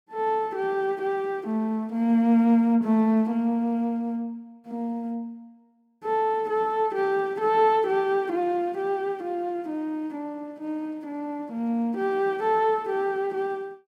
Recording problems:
none

